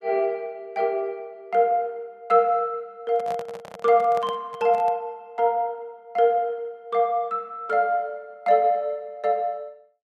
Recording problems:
handling noise; from 3 to 5 s; peak -8 dB vs average level

